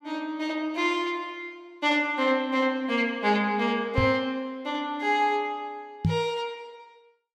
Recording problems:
microphone bump; at 4 s and at 6 s; peak +6 dB vs average level

